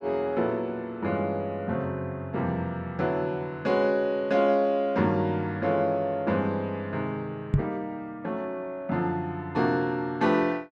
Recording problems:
microphone thump; at 7.5 s; peak +8 dB vs average level

